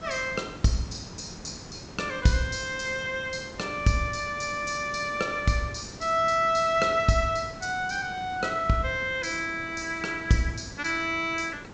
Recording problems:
treble cut off; nothing above 8 kHz
background hiss; slope -6 dB per octave, SNR 16 dB

